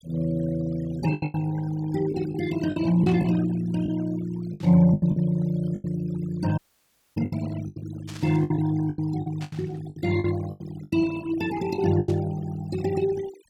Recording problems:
noise reduction artefacts; signal-to-artefact ratio 17 dB
packet loss; 11% of the sound replaced, filled with the last packet
static burst; 5 times, first at 3 s; peak -12 dB vs average level
dropout; at 6.5 s for 0.5 s

